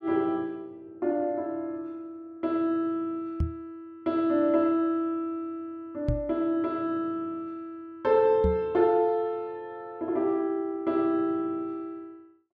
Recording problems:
knock on the microphone; at 3.5 s, at 6 s and at 8.5 s; peak +4 dB vs average level

